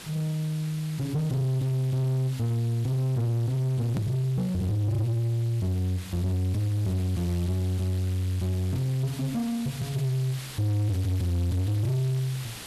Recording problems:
distortion; soft clipping, signal-to-distortion ratio 11 dB
background hiss; slope 0 dB per octave, SNR 15 dB
click at an edit; at 4 s

